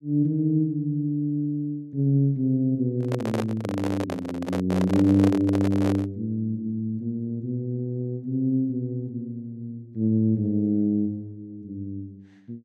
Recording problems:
handling noise; from 3 to 6 s; peak 0 dB vs average level

